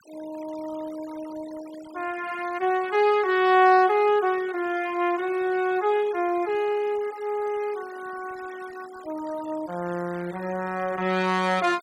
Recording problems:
noise reduction artefacts; signal-to-artefact ratio 21 dB

